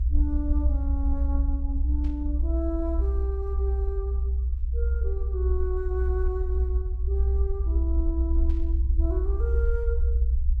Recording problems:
rumble; below 64 Hz, strongest tone 62 Hz, SNR -8 dB
static burst; at 2 s and at 8.5 s; peak -15 dB vs average level

